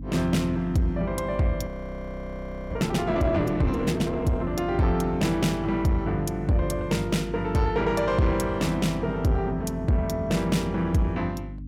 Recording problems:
distortion; soft clipping, signal-to-distortion ratio 12 dB
mains hum; 50 Hz, harmonics up to 300 Hz, SNR 12 dB
audio freezing; at 1.5 s for 1 s

